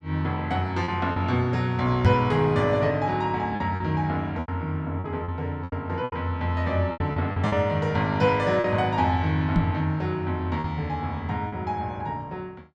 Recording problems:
lost packets; 6% of the sound replaced, filled with repeated pitch periods
microphone bump; at 2 s and at 9.5 s; peak +8 dB vs average level

